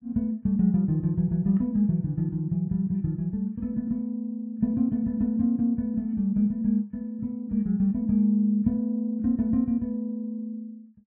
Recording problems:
none

